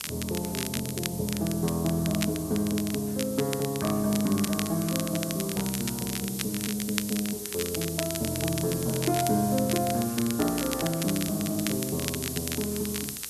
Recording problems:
hum; 60 Hz, harmonics up to 480 Hz, SNR 28 dB
hiss; SNR 8 dB
crackle; vinyl, SNR 7 dB

